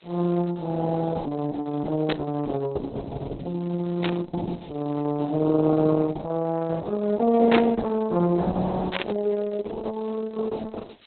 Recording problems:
codec artefacts; Opus, log-spectral distance 4 dB, nothing above 4 kHz
background hiss; SNR 29 dB
burst of static; 4 times, first at 2 s; peak +1 dB vs average level

